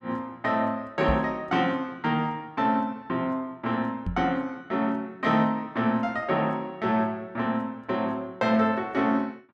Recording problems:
microphone bump; at 1 s and at 4 s; peak +1 dB vs average level

